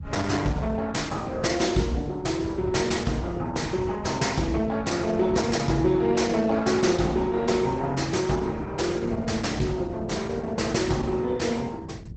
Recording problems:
codec artefacts; Opus, log-spectral distance 4 dB, nothing above 7.6 kHz
low-frequency rumble; below 150 Hz, SNR 11 dB

